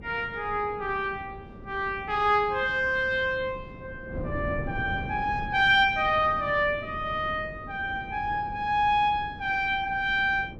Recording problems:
wind on the microphone; below 290 Hz, SNR 15 dB

